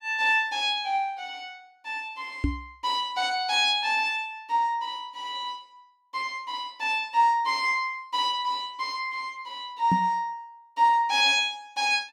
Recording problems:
knock on the microphone; at 2.5 s and at 10 s; peak +3 dB vs average level

